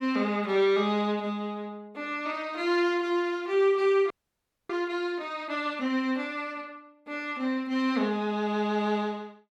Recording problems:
audio freezing; at 4 s for 0.5 s

